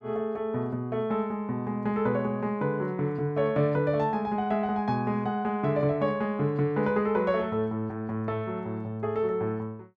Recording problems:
none

